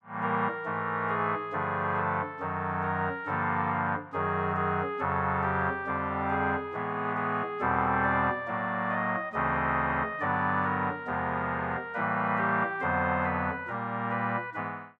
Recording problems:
none

